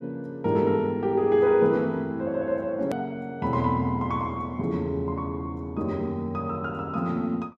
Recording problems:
edit click; at 3 s

